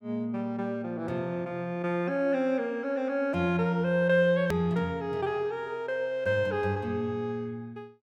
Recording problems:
edit click; at 4.5 s

